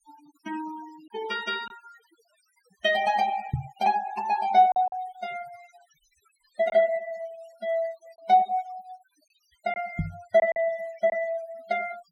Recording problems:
denoising artefacts; signal-to-artefact ratio 20 dB
packet loss; 2% of the sound replaced, filled with silence
microphone bump; at 3.5 s and at 10 s; peak +2 dB vs average level

